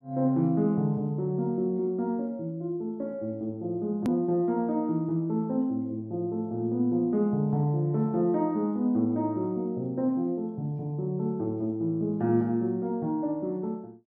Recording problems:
hard cut with a click; at 4 s

